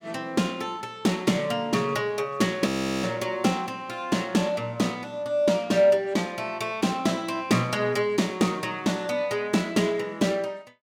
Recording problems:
frozen audio; at 2.5 s

